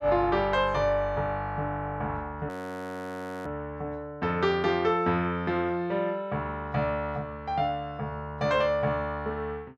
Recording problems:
frozen audio; at 2.5 s for 1 s

